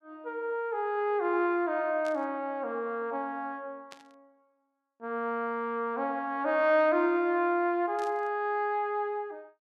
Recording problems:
static burst; at 2 s, at 4 s and at 8 s; peak -13 dB vs average level

